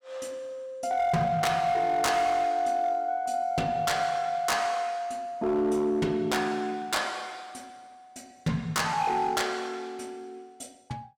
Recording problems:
distorted audio; hard clipping, signal-to-distortion ratio 11 dB

